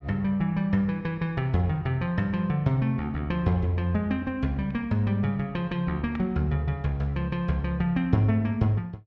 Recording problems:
none

